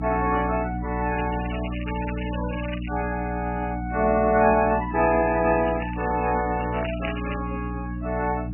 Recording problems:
lossy codec; MP3, log-spectral distance 10 dB, nothing above 2.6 kHz
hum; 60 Hz, harmonics up to 300 Hz, SNR 6 dB
crackling; from 1 to 3 s and from 5.5 to 7.5 s; loose cable, SNR 14 dB

